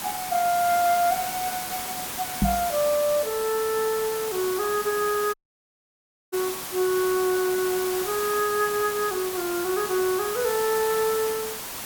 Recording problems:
hiss; slope -1 dB per octave, SNR 6 dB
microphone bump; at 2.5 s; peak +6 dB vs average level
dropout; at 5.5 s for 1 s

